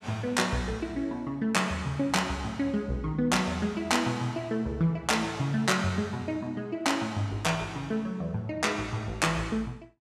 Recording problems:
none

